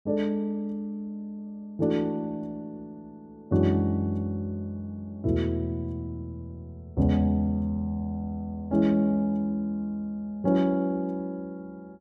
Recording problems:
none

